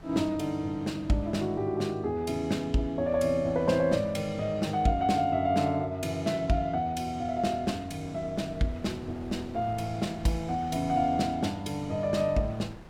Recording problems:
wind on the microphone; below 560 Hz, SNR 21 dB

